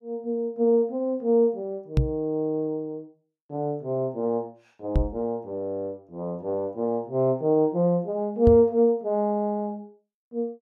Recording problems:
microphone thump; at 2 s, at 5 s and at 8.5 s; peak +7 dB vs average level

